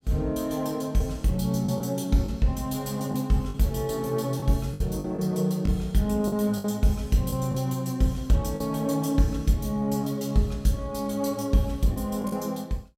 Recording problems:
lost packets; 4% of the sound replaced, filled with the last packet

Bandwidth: 16 kHz